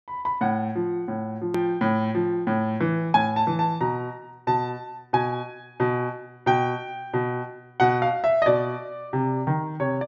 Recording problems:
treble cut off; nothing above 7.2 kHz
click at an edit; at 1.5 s

